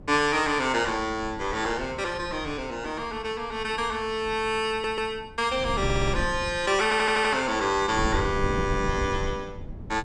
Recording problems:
wind noise; below 180 Hz, SNR 10 dB
stutter; at 4.5 s, at 6 s and at 7 s

